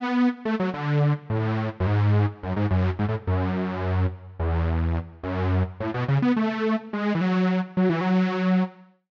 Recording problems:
low-pass filter; nothing above 8 kHz

